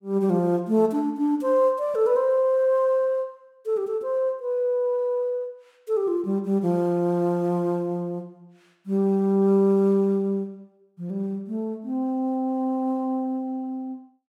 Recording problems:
none

